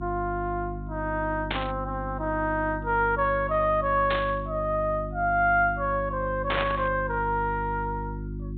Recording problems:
treble missing; nothing above 4 kHz
hum; 50 Hz, harmonics up to 350 Hz, SNR 9 dB
burst of static; at 1.5 s, at 4 s and at 6.5 s; peak +2 dB vs average level

